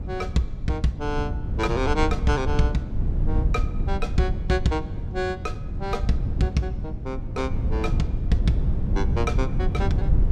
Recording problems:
wind on the microphone; below 110 Hz, SNR 0 dB

